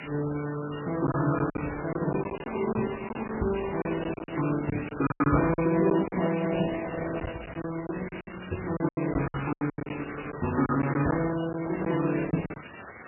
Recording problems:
codec artefacts; Opus, then MP3, log-spectral distance 20 dB, nothing above 2.4 kHz
hiss; SNR 14 dB
packet loss; 11% of the sound replaced, filled with silence

